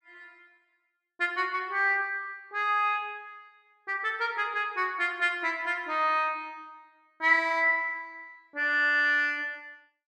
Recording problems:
none

